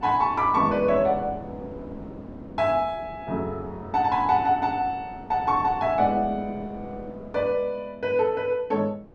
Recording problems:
wind noise; below 430 Hz, SNR 18 dB

